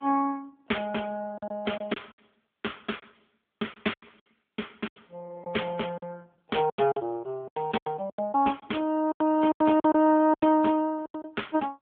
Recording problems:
telephone audio; 240 Hz to 3.4 kHz, AMR-NB
lost packets; 12% of the sound replaced, filled with silence

